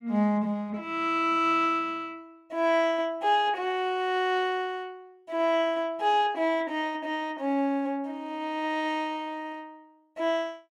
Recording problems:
none

